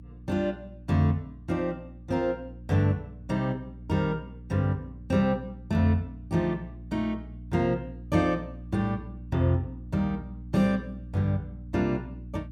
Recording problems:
electrical hum; 60 Hz, harmonics up to 300 Hz, SNR 14 dB

